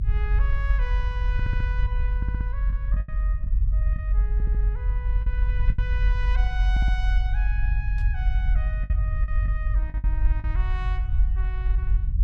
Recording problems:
rumble; below 54 Hz, strongest tone 46 Hz, SNR -13 dB
lost packets; 5% of the sound replaced, filled with the last packet
stutter; 4 times, first at 1.5 s
static burst; at 8 s; peak -10 dB vs average level

